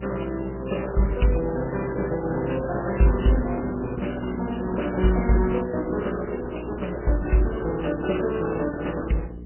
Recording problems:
lossy compression; Opus, then MP3, log-spectral distance 7 dB, nothing above 3 kHz
hum; 60 Hz, harmonics up to 480 Hz, SNR 12 dB

